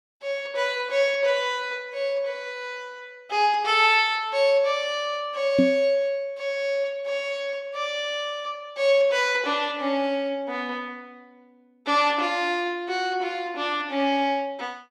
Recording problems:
microphone bump; at 5.5 s; peak +7 dB vs average level

